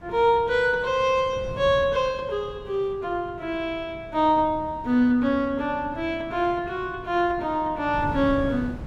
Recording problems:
wind noise; below 230 Hz, SNR 16 dB

